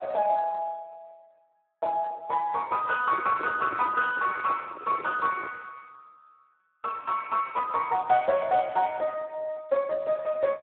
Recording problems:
telephone audio; 240 Hz to 2.6 kHz, Speex
handling noise; from 3 to 5.5 s; peak -6 dB vs average level

